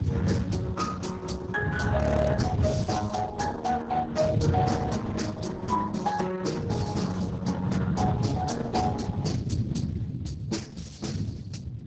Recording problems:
lossy codec; Speex, then Opus, log-spectral distance 4 dB, nothing above 7.3 kHz
wind on the microphone; below 190 Hz, SNR 0 dB
frozen audio; at 2 s

